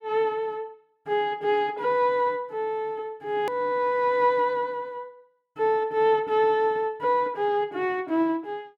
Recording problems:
click at an edit; at 3.5 s

